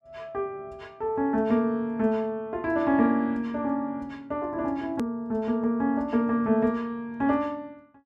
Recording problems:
click at an edit; at 5 s

